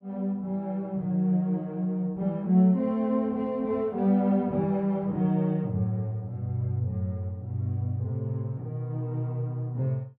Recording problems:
none

